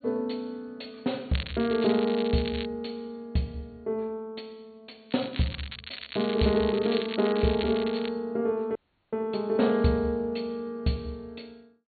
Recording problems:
low-pass filter; nothing above 4.4 kHz
crackle; from 1.5 to 2.5 s and from 5 to 8 s; loose cable, SNR 11 dB
dropout; at 9 s

